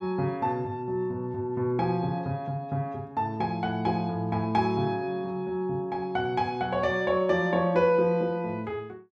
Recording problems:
none

